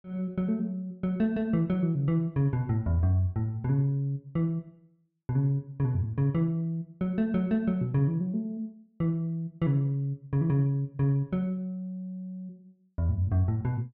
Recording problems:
none

